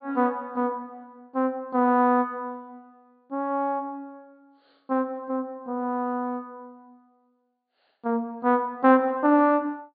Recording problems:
treble cut off; nothing above 4.8 kHz

